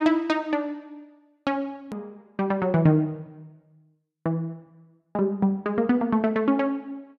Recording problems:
click at an edit; at 2 s

